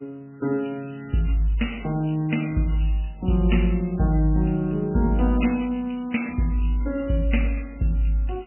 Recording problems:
lossy compression; MP3, log-spectral distance 5 dB, nothing above 2.9 kHz
background hiss; SNR 40 dB

